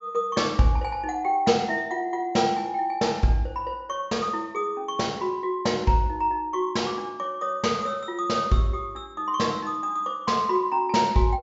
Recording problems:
treble missing; nothing above 8 kHz

